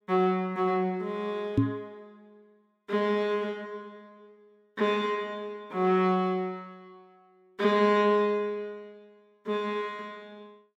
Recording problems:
microphone thump; at 1.5 s; peak +8 dB vs average level

